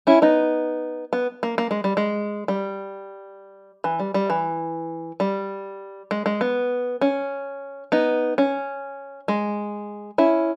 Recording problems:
none

